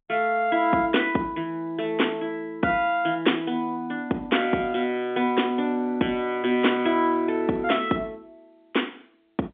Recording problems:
telephone audio; 170 Hz to 3.6 kHz, G.711

